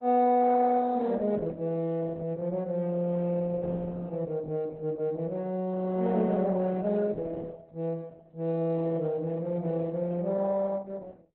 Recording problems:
lossy compression; Opus, log-spectral distance 2 dB, nothing above 4 kHz

